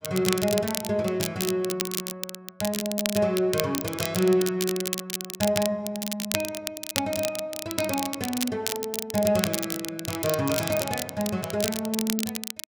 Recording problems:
crackle; vinyl, SNR 4 dB

